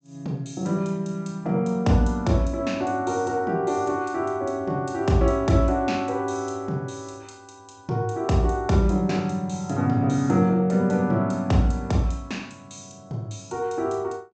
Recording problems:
low-pass filter; nothing above 8 kHz

